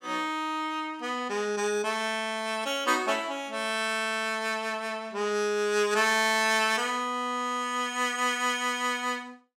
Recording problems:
none

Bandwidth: 16 kHz